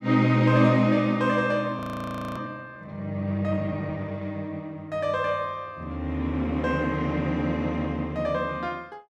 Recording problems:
frozen audio; at 2 s for 0.5 s

